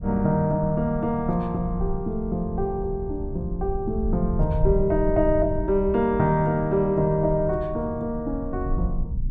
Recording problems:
low-frequency rumble; below 84 Hz, SNR 8 dB

